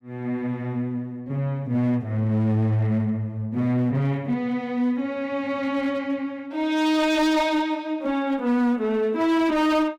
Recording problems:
distorted audio; hard clipping, uneven, signal-to-distortion ratio 10 dB

